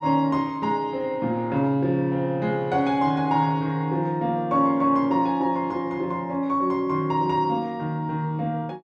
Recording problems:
none

